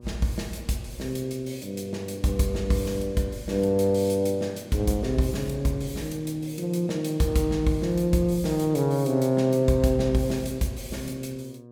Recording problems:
hum; 60 Hz, harmonics up to 1.2 kHz, SNR 22 dB

